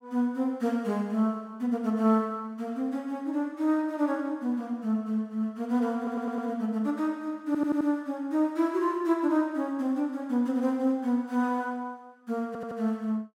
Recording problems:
audio stuttering; at 6 s, at 7.5 s and at 12 s

